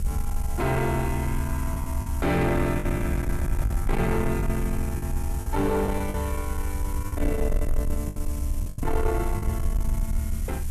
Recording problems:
distortion; soft clipping, signal-to-distortion ratio 12 dB
hiss; SNR 13 dB
low-frequency rumble; below 72 Hz, SNR 1 dB
lost packets; 6% of the sound replaced, filled with the last packet
microphone handling noise; from 3 to 4.5 s; peak -10 dB vs average level

